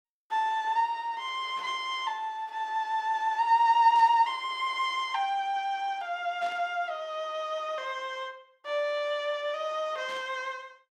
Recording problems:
burst of static; 4 times, first at 1.5 s; peak -13 dB vs average level

